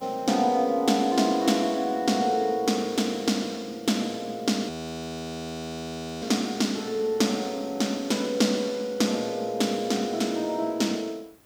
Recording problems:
hiss; slope -4 dB per octave, SNR 29 dB
audio freezing; at 4.5 s for 1.5 s

